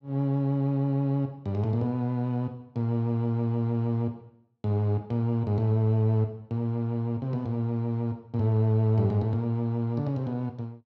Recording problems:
none

